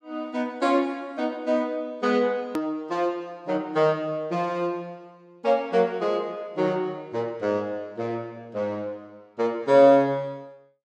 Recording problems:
hard cut with a click; at 2.5 s

